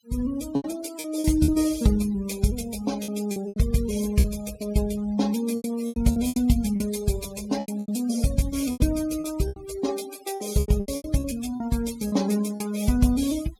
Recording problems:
denoising artefacts; signal-to-artefact ratio 16 dB
lost packets; 11% of the sound replaced, filled with repeated pitch periods

